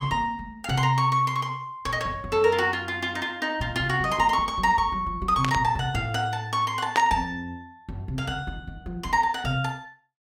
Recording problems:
burst of static; at 5.5 s and at 7 s; peak +2 dB vs average level

